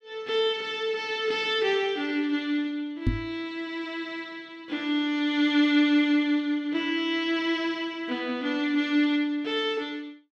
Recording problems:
microphone thump; at 3 s; peak +5 dB vs average level

